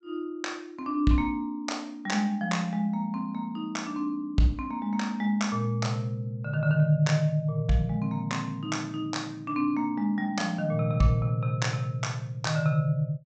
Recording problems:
treble missing; nothing above 8 kHz

